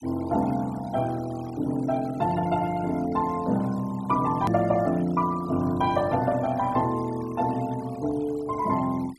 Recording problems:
noise reduction artefacts; signal-to-artefact ratio 20 dB
edit click; at 4.5 s

